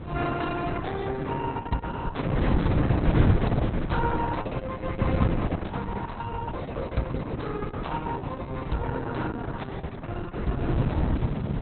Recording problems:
codec artefacts; Opus, log-spectral distance 4 dB, nothing above 4.1 kHz
wind on the microphone; below 230 Hz, SNR -2 dB

